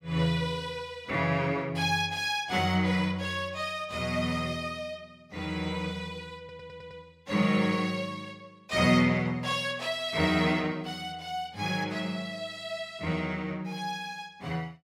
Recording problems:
audio stuttering; at 6.5 s

